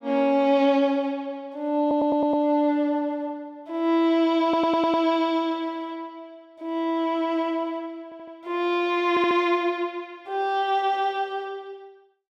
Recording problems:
audio stuttering; 4 times, first at 2 s

